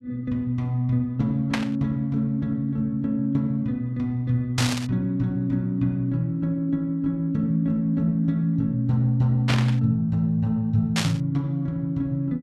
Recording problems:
static burst; 4 times, first at 1.5 s; peak +3 dB vs average level

